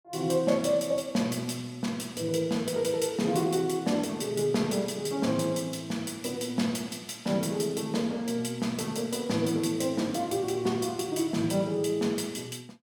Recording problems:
none

